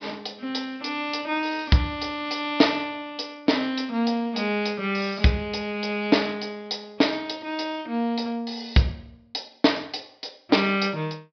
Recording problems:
low-pass filter; nothing above 5.5 kHz

